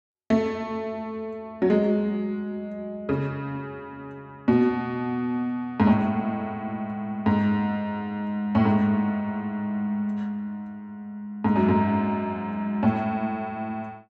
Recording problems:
none

